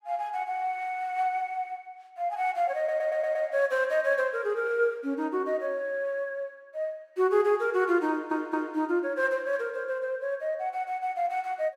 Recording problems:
audio stuttering; at 3 s and at 8 s

